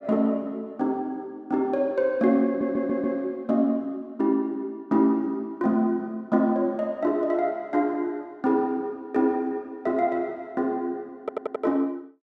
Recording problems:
audio stuttering; at 2.5 s and at 11 s

